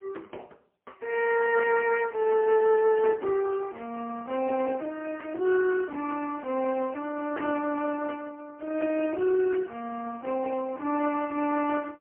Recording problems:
telephone audio; 260 Hz to 2.9 kHz, AMR-NB, then MP3

